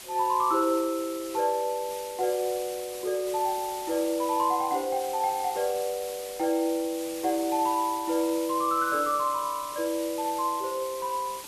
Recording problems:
background hiss; slope 0 dB per octave, SNR 12 dB

